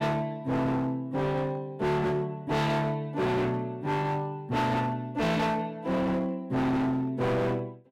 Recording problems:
distortion; hard clipping, signal-to-distortion ratio 7 dB

